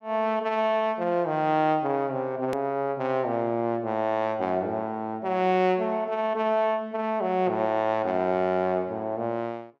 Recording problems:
click at an edit; at 2.5 s

